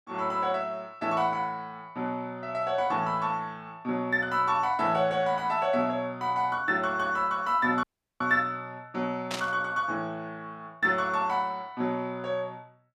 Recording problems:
audio cutting out; at 8 s
burst of static; at 9.5 s; peak -1 dB vs average level

